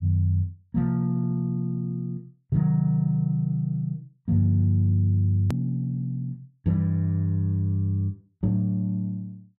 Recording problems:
hard cut with a click; at 5.5 s

